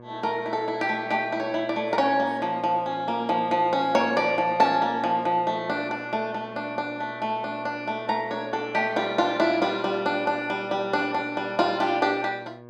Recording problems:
mains hum; 60 Hz, harmonics up to 1.8 kHz, SNR 20 dB

